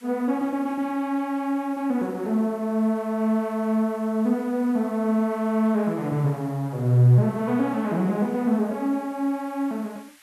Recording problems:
background hiss; SNR 28 dB

